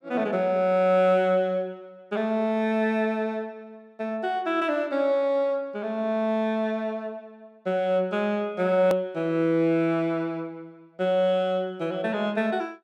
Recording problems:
hard cut with a click; at 9 s

